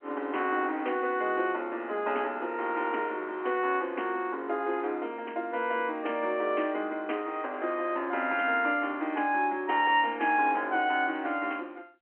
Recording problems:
telephone audio; 240 Hz to 3.2 kHz, G.711

